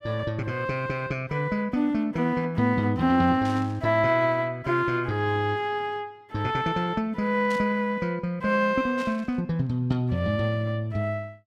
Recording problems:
static burst; at 3.5 s, at 7.5 s and at 9 s; peak -11 dB vs average level

